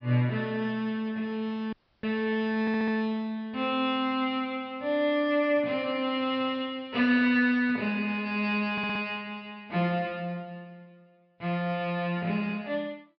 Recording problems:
treble cut off; nothing above 5.5 kHz
dropout; at 1.5 s
audio stuttering; at 2.5 s and at 8.5 s

